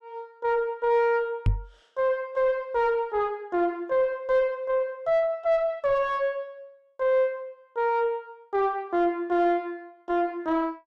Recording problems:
distortion; soft clipping, signal-to-distortion ratio 10 dB
knock on the microphone; at 1.5 s; peak +5 dB vs average level

